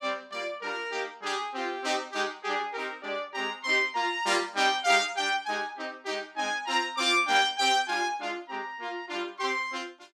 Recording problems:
none

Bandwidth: 14.5 kHz